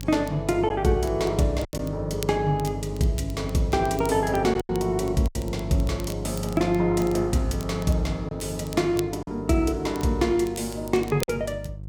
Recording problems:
mains hum; 50 Hz, harmonics up to 350 Hz, SNR 11 dB
crackle; vinyl, SNR 20 dB
lost packets; 3% of the sound replaced, filled with silence

